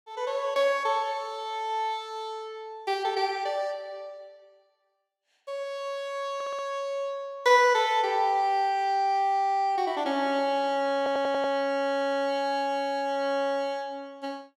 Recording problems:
stutter; at 6.5 s, at 11 s and at 12 s

